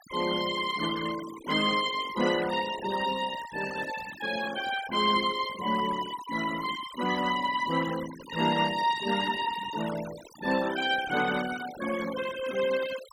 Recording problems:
noise reduction artefacts; signal-to-artefact ratio 13 dB

